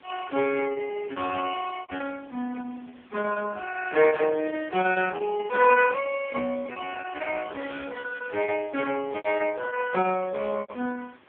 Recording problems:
telephone audio; 220 Hz to 2.9 kHz, AMR-NB
hiss; SNR 27 dB
packet loss; 11% of the sound replaced, filled with repeated pitch periods
static burst; 4 times, first at 2 s; peak -19 dB vs average level

